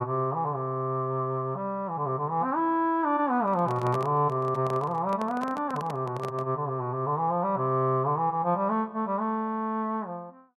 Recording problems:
microphone handling noise; from 3.5 to 6.5 s; peak -4 dB vs average level

